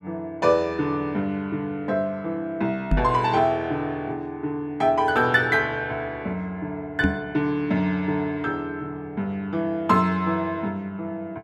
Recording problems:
microphone bump; at 3 s and at 7 s; peak +6 dB vs average level

